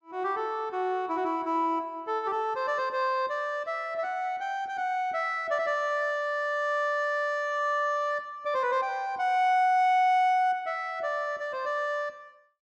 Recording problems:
none

